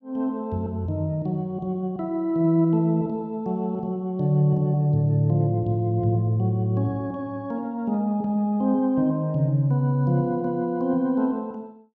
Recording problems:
none

